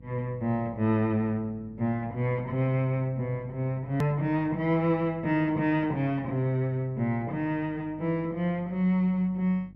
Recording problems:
hum; 50 Hz, harmonics up to 550 Hz, SNR 22 dB
click at an edit; at 4 s

